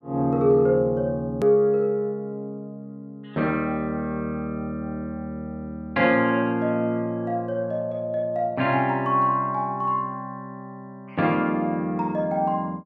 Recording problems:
click at an edit; at 1.5 s

